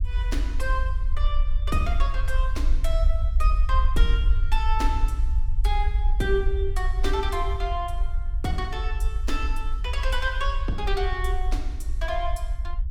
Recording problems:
low-frequency rumble; below 54 Hz, SNR -3 dB

